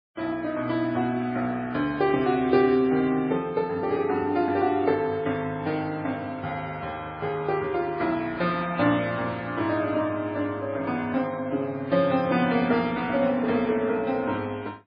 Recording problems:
codec artefacts; MP3, then MP3, log-spectral distance 2 dB, nothing above 4.2 kHz

